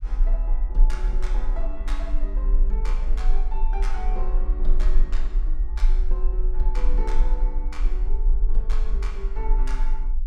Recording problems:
low-frequency rumble; below 36 Hz, strongest tone 20 Hz, SNR -13 dB

